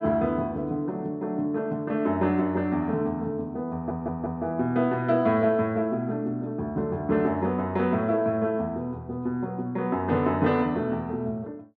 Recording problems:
audio stuttering; at 3.5 s

